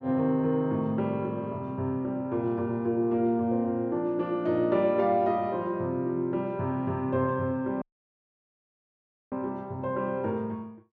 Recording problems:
audio cutting out; at 8 s for 1.5 s

